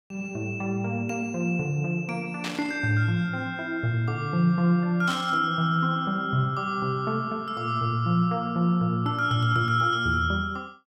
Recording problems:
burst of static; at 2.5 s and at 5 s; peak -4 dB vs average level

